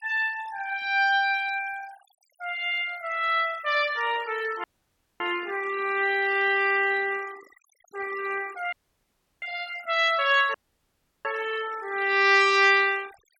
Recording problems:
noise reduction artefacts; signal-to-artefact ratio 19 dB
audio cutting out; at 4.5 s for 0.5 s, at 8.5 s for 0.5 s and at 11 s for 0.5 s

